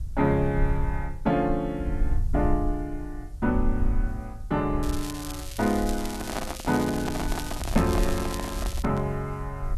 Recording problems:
hiss; SNR 30 dB
rumble; below 60 Hz, SNR 5 dB
crackling; from 5 to 9 s; loose cable, SNR 10 dB
microphone handling noise; from 6 to 9 s; peak +1 dB vs average level

